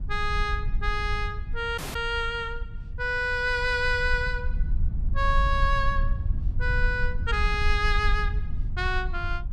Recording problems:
low-frequency rumble; below 64 Hz, SNR 3 dB
audio cutting out; at 2 s

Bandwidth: 14 kHz